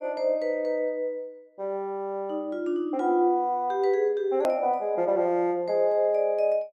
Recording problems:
edit click; at 4.5 s

